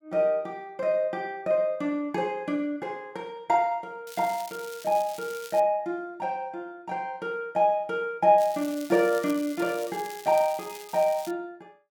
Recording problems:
crackle; from 4 to 5.5 s and from 8.5 to 11 s; loose cable, SNR 17 dB

